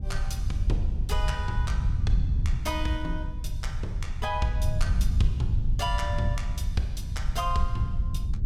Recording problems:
wind on the microphone; below 84 Hz, SNR -4 dB

